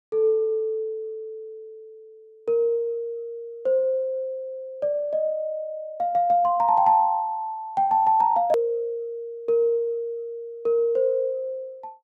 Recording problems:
click at an edit; at 8.5 s

